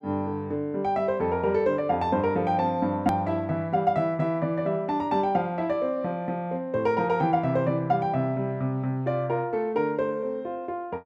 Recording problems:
hard cut with a click; at 3 s

